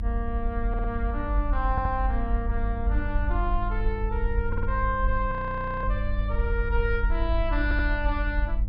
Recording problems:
treble missing; nothing above 5.5 kHz
hum; 50 Hz, harmonics up to 800 Hz, SNR 8 dB
low-frequency rumble; below 52 Hz, SNR -1 dB
stutter; 4 times, first at 0.5 s
audio freezing; at 5.5 s for 0.5 s

